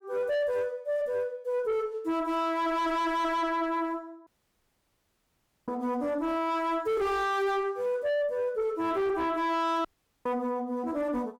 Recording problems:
distorted audio; soft clipping, signal-to-distortion ratio 5 dB
audio cutting out; at 4.5 s for 1.5 s and at 10 s

